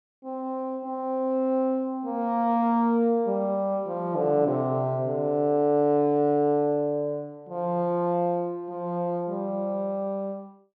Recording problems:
none

